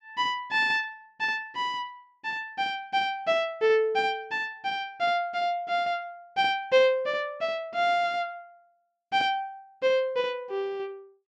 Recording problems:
none

